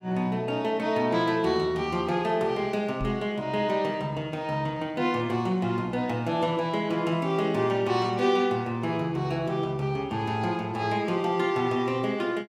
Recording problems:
microphone thump; at 3 s; peak -2 dB vs average level

